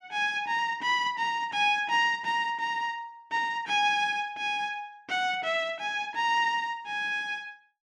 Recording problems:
none

